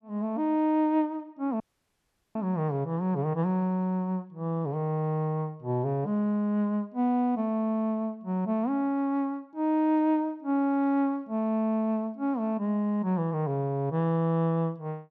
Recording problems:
audio cutting out; at 1.5 s for 1 s

